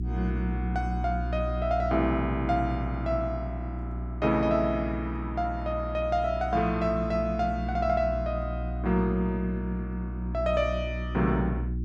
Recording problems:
hum; 60 Hz, harmonics up to 360 Hz, SNR 5 dB

